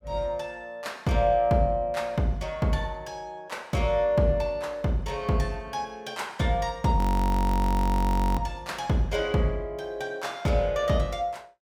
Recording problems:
frozen audio; at 7 s for 1.5 s

